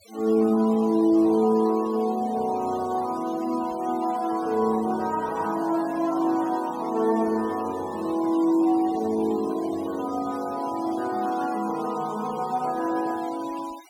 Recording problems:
denoising artefacts; signal-to-artefact ratio 20 dB

